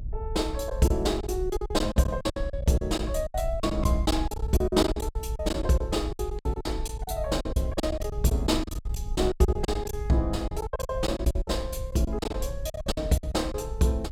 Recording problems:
rumble; below 66 Hz, SNR 6 dB
lost packets; 17% of the sound replaced, filled with silence

